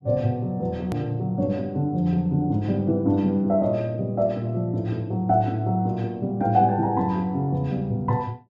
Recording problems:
hard cut with a click; at 1 s

